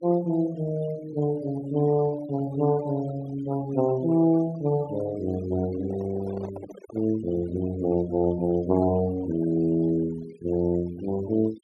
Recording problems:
noise reduction artefacts; signal-to-artefact ratio 20 dB
microphone handling noise; from 5.5 to 7 s; peak -10 dB vs average level

